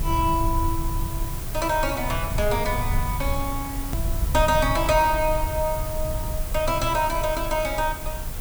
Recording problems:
background hiss; slope -4 dB per octave, SNR 10 dB
rumble; below 90 Hz, SNR 6 dB
hard cut with a click; at 4 s

